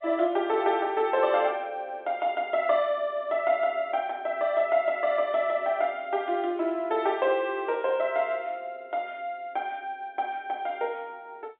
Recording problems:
telephone audio; 260 Hz to 4 kHz, G.711

